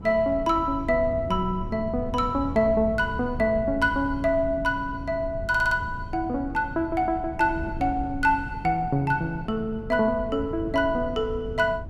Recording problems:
wind noise; below 150 Hz, SNR 12 dB
stutter; at 5.5 s

